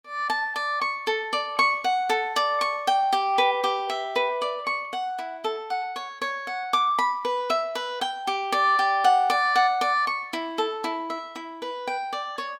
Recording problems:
none

